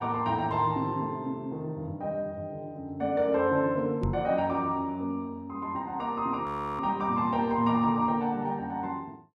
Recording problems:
knock on the microphone; at 4 s; peak +2 dB vs average level
frozen audio; at 6.5 s

